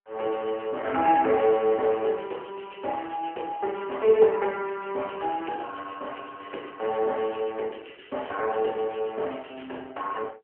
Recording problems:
phone line; 280 Hz to 3 kHz, AMR-NB

